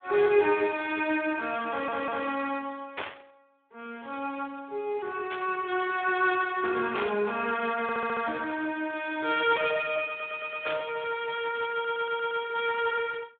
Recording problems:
telephone audio; 280 Hz to 3.6 kHz, Speex
stutter; 4 times, first at 1.5 s
static burst; 4 times, first at 3 s; peak -2 dB vs average level

